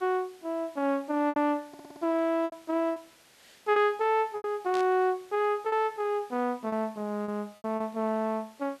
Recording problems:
hiss; slope -1 dB per octave, SNR 27 dB
packet loss; 7% of the sound replaced, filled with repeated pitch periods
audio stuttering; at 1.5 s
static burst; at 4.5 s; peak -8 dB vs average level

